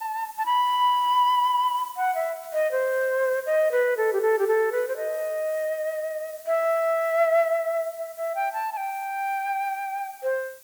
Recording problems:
hiss; slope +1 dB per octave, SNR 20 dB

